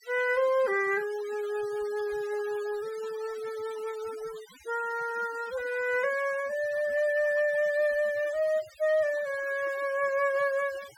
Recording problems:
noise reduction artefacts; signal-to-artefact ratio 19 dB

